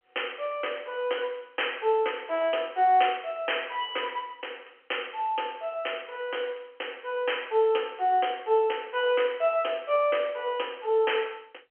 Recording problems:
telephone audio; 340 Hz to 3.2 kHz, G.711

